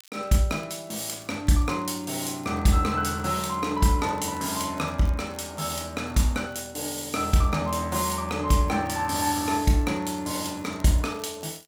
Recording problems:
crackle; vinyl, SNR 28 dB

